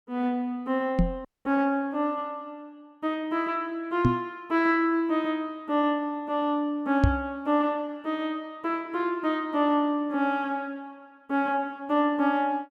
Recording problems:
microphone bump; at 1 s, at 4 s and at 7 s; peak +9 dB vs average level
frozen audio; at 1.5 s

